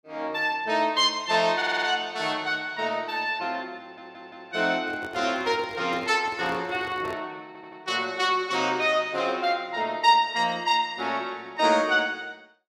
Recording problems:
stutter; at 1.5 s, at 4 s and at 7.5 s
handling noise; from 5 to 7 s; peak -8 dB vs average level

